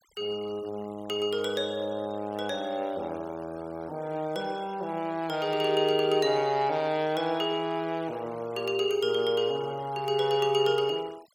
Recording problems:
noise reduction artefacts; signal-to-artefact ratio 24 dB

